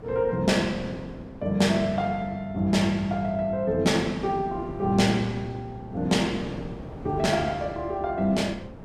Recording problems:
wind on the microphone; below 420 Hz, SNR 16 dB

